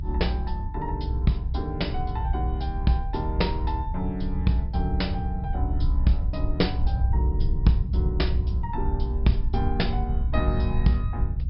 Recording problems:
treble missing; nothing above 5.3 kHz
low-frequency rumble; below 76 Hz, SNR -1 dB

